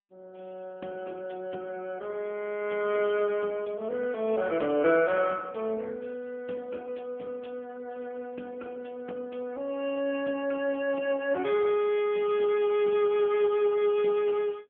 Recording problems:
phone line; 220 Hz to 3.3 kHz, AMR-NB

